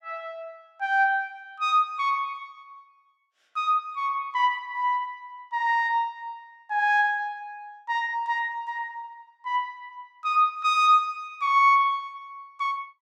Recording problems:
none

